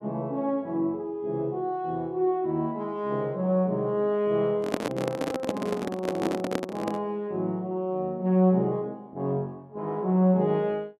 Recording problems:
microphone handling noise; from 4.5 to 7 s; peak +4 dB vs average level

